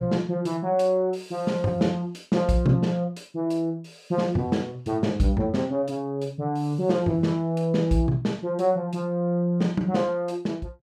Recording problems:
none

